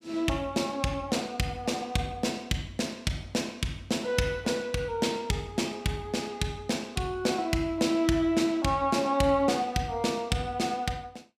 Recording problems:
none

